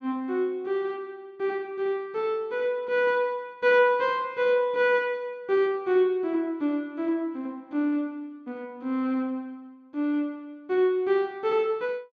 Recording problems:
none

